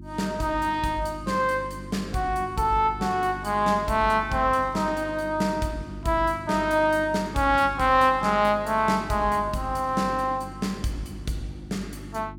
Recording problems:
hum; 50 Hz, harmonics up to 350 Hz, SNR 16 dB

